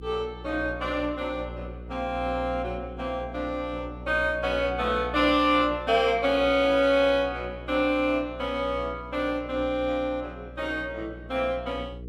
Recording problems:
hum; 60 Hz, harmonics up to 480 Hz, SNR 15 dB

